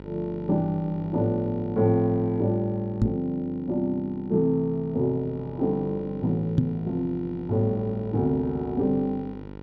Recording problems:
mains hum; 50 Hz, harmonics up to 1.9 kHz, SNR 16 dB
microphone thump; at 3 s and at 6.5 s; peak +8 dB vs average level

